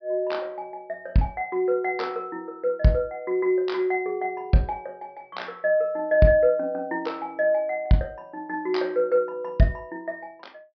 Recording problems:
low-pass filter; nothing above 5.5 kHz

